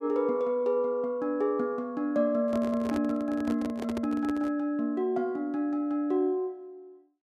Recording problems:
handling noise; from 2.5 to 4.5 s; peak -3 dB vs average level

